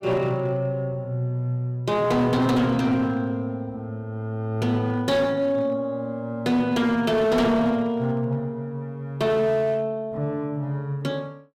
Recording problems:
distortion; hard clipping, signal-to-distortion ratio 11 dB

